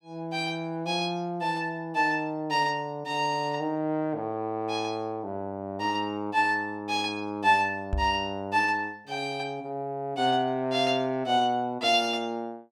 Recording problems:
microphone bump; at 8 s; peak +2 dB vs average level

